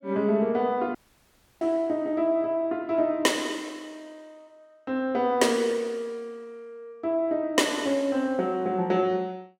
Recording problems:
dropout; at 1 s for 0.5 s

